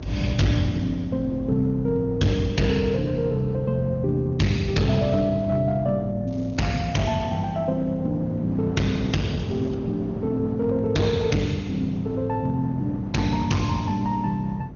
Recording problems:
codec artefacts; Opus, then MP2, log-spectral distance 2 dB, nothing above 6.7 kHz
distorted audio; hard clipping, signal-to-distortion ratio 7 dB
electrical hum; 50 Hz, harmonics up to 400 Hz, SNR 15 dB
wind noise; below 340 Hz, SNR 13 dB
crackle; at 6.5 s and at 9 s; loose cable, SNR 29 dB

